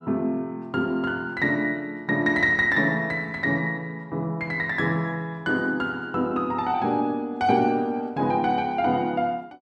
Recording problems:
none

